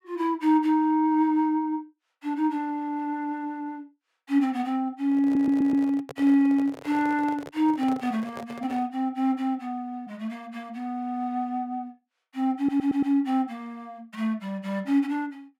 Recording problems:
microphone handling noise; from 5 to 9 s; peak -8 dB vs average level
stutter; at 5 s and at 13 s

